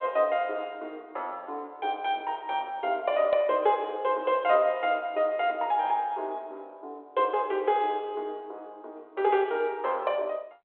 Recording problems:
phone line; 340 Hz to 3.5 kHz, G.726

